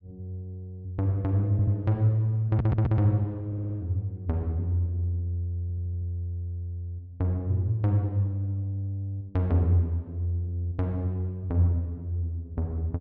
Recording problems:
stutter; 4 times, first at 1.5 s

